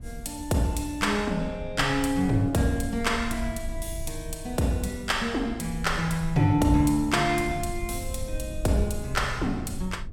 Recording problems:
low-frequency rumble; below 80 Hz, SNR 12 dB

